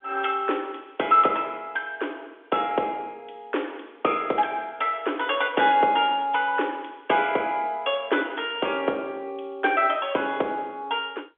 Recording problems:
telephone audio; 260 Hz to 3.5 kHz, G.711

